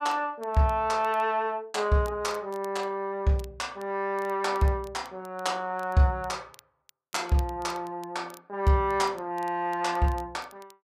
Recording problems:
crackle; vinyl, SNR 27 dB

